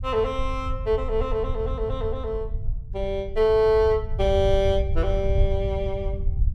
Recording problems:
rumble; below 78 Hz, SNR 5 dB

